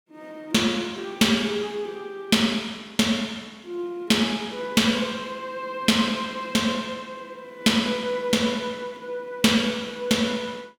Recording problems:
none

